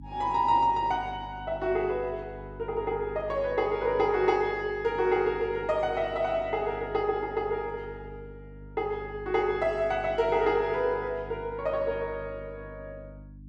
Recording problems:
hum; 50 Hz, harmonics up to 300 Hz, SNR 18 dB

